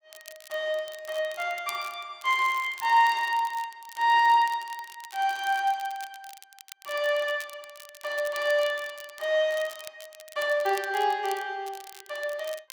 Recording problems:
crackling; vinyl, SNR 19 dB

